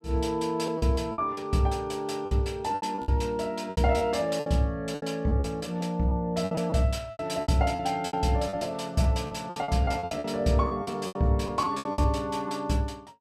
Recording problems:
lost packets; 14% of the sound replaced, filled with repeated pitch periods

